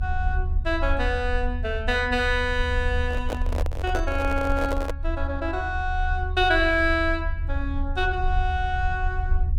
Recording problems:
rumble; below 78 Hz, strongest tone 30 Hz, SNR 3 dB
microphone handling noise; from 3 to 5 s; peak -1 dB vs average level

